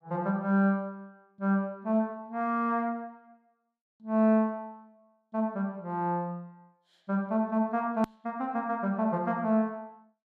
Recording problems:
hard cut with a click; at 8 s

